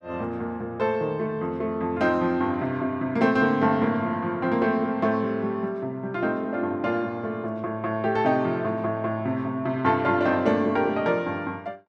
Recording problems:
none

